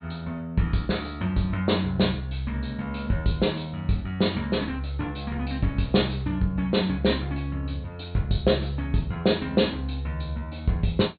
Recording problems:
low-pass filter; nothing above 4.4 kHz

